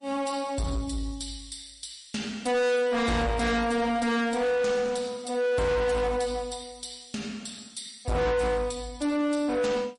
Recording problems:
codec artefacts; MP3, log-spectral distance 5 dB, nothing above 10.4 kHz
distorted audio; soft clipping, signal-to-distortion ratio 6 dB

